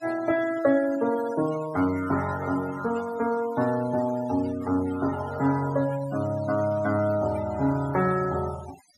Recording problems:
denoising artefacts; signal-to-artefact ratio 16 dB

